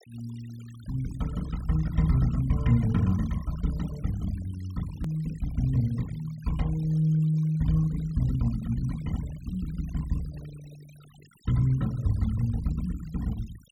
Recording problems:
denoising artefacts; signal-to-artefact ratio 22 dB
click at an edit; at 5 s

